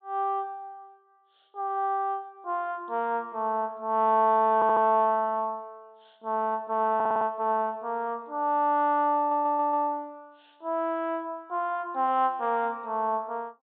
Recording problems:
low-pass filter; nothing above 4 kHz
audio stuttering; at 4.5 s, at 7 s and at 9 s

